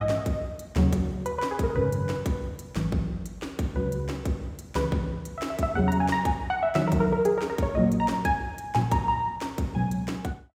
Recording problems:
none

